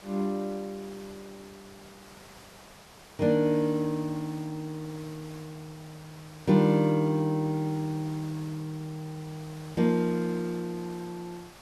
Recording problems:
background hiss; SNR 20 dB

